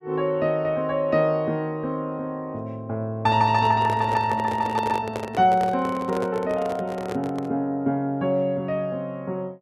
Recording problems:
handling noise; from 3.5 to 7.5 s; peak -2 dB vs average level

